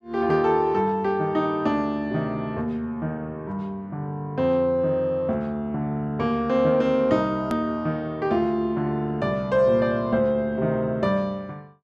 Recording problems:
hard cut with a click; at 7.5 s

